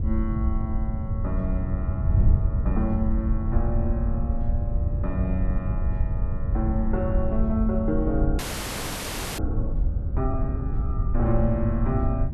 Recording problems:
wind noise; below 90 Hz, SNR -3 dB
audio freezing; at 8.5 s for 1 s

